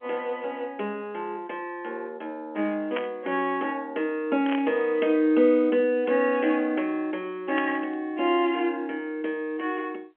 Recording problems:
phone line; 240 Hz to 3.3 kHz, G.711
burst of static; at 3 s, at 4.5 s and at 7.5 s; peak -2 dB vs average level

